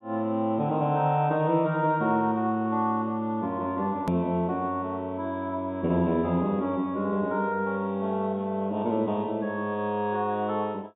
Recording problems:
treble cut off; nothing above 4 kHz
click at an edit; at 4 s

